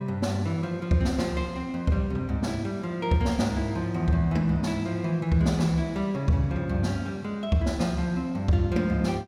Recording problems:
none

